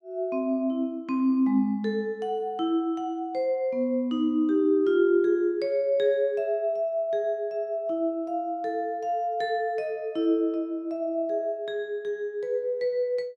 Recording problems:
none

